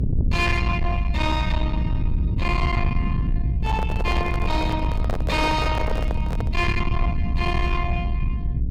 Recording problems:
distorted audio; soft clipping, signal-to-distortion ratio 10 dB
rumble; below 120 Hz, SNR -1 dB
microphone handling noise; from 3.5 to 6.5 s; peak +1 dB vs average level

